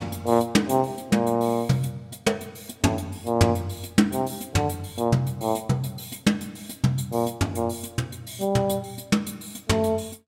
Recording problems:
none

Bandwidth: 16 kHz